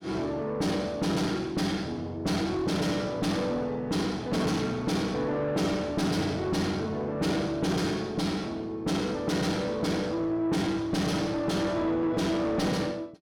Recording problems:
distortion; soft clipping, signal-to-distortion ratio 6 dB

